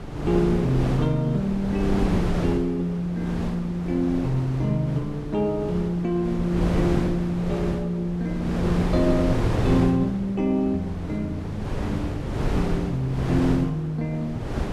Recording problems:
wind on the microphone; below 410 Hz, SNR 5 dB

